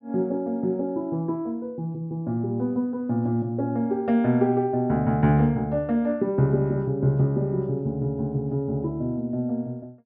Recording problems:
treble cut off; nothing above 5.3 kHz

